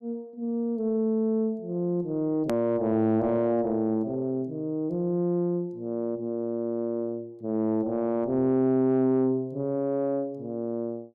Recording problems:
distortion; soft clipping, signal-to-distortion ratio 10 dB
hard cut with a click; at 2.5 s

